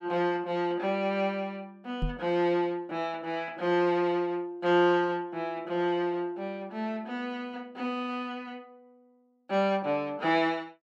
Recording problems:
knock on the microphone; at 2 s; peak +1 dB vs average level

